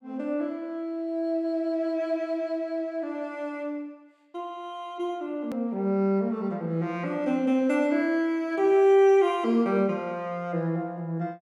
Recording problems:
edit click; at 5.5 s

